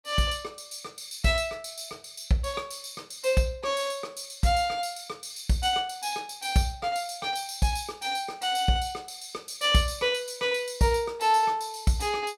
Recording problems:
none

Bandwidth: 16.5 kHz